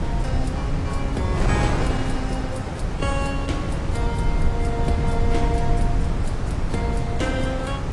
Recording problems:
codec artefacts; AAC, log-spectral distance 2 dB, nothing above 10.4 kHz
rumble; below 100 Hz, SNR -1 dB
wind noise; below 380 Hz, SNR -1 dB

